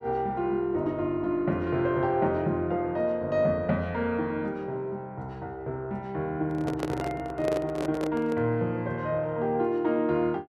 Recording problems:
handling noise; from 6.5 to 8.5 s; peak +1 dB vs average level

